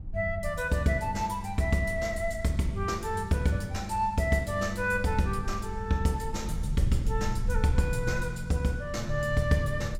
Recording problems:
rumble; below 64 Hz, SNR 10 dB

